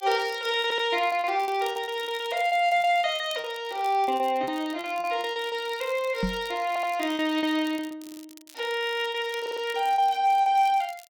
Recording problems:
crackle; vinyl, SNR 23 dB
lost packets; 13% of the sound replaced, filled with repeated pitch periods
stutter; 4 times, first at 0.5 s
microphone bump; at 6 s; peak +1 dB vs average level

